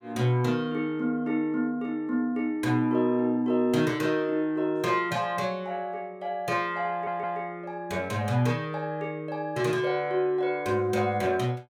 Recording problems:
audio stuttering; at 7 s

